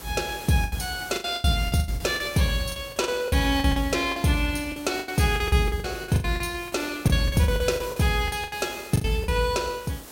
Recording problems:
hiss; SNR 17 dB
packet loss; 17% of the sound replaced, filled with the last packet

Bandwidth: 16 kHz